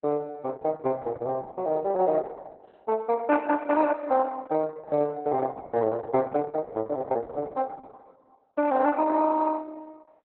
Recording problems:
codec artefacts; Opus, log-spectral distance 3 dB, nothing above 4 kHz

